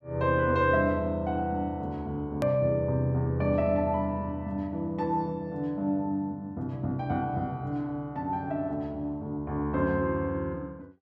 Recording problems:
edit click; at 2.5 s

